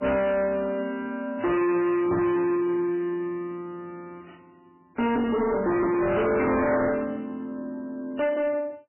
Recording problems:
lossy compression; MP3, log-spectral distance 2 dB, nothing above 2.7 kHz
distorted audio; soft clipping, signal-to-distortion ratio 6 dB

